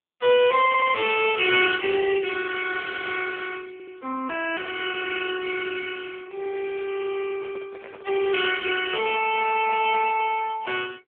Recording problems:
phone line; 280 Hz to 3.4 kHz, AMR-NB
stutter; at 0.5 s and at 3.5 s
audio freezing; at 3 s
microphone handling noise; from 7.5 to 10 s; peak -11 dB vs average level

